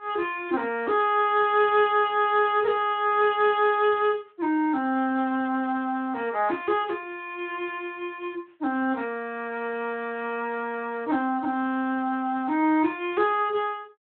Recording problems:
phone line; 280 Hz to 3.7 kHz, Speex

